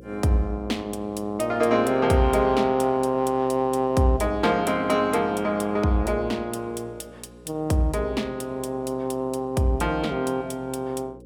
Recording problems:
hum; 60 Hz, harmonics up to 540 Hz, SNR 22 dB

